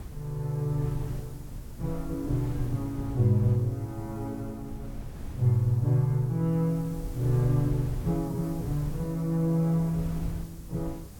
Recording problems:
background hiss; slope +7 dB per octave, SNR 26 dB
wind on the microphone; below 120 Hz, SNR 12 dB

